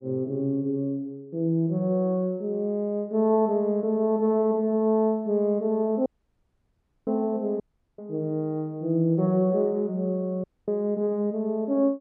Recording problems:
audio cutting out; at 6 s for 1 s, at 7.5 s and at 10 s

